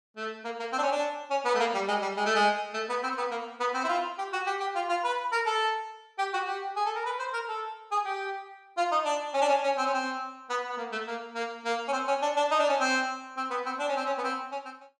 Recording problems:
none

